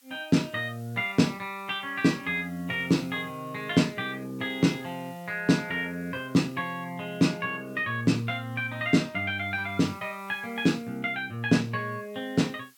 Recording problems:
background hiss; slope +4 dB per octave, SNR 28 dB

